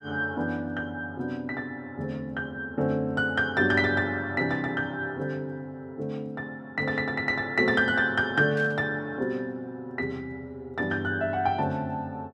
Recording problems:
burst of static; at 8.5 s; peak -15 dB vs average level

